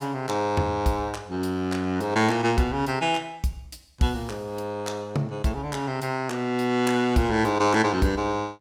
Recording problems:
none

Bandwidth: 17 kHz